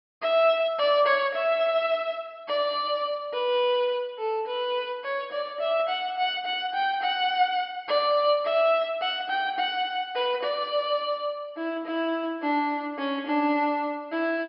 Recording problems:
low-pass filter; nothing above 5.5 kHz

